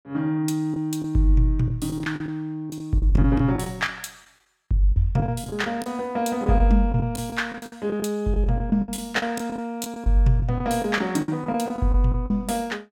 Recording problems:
lost packets; 12% of the sound replaced, filled with the last packet

